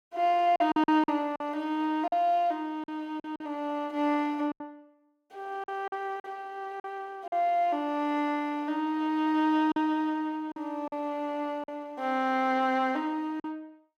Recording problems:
lost packets; 6% of the sound replaced, filled with silence

